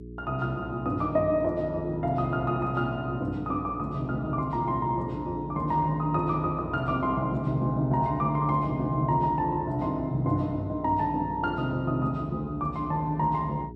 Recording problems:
mains hum; 60 Hz, harmonics up to 420 Hz, SNR 14 dB

